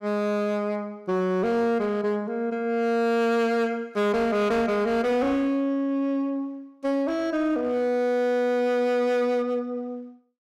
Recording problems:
distortion; hard clipping, signal-to-distortion ratio 11 dB

